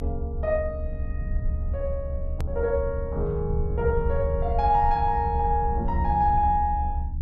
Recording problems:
hum; 60 Hz, harmonics up to 300 Hz, SNR 13 dB
rumble; below 74 Hz, SNR 5 dB
click at an edit; at 2.5 s

